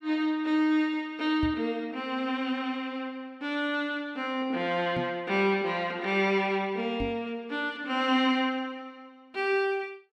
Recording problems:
microphone thump; at 1.5 s, at 5 s and at 7 s; peak -2 dB vs average level

